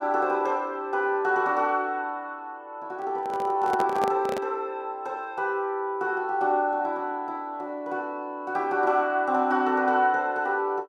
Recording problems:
handling noise; from 3 to 4.5 s; peak 0 dB vs average level

